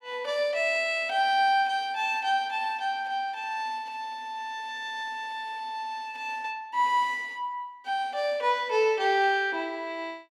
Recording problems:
none

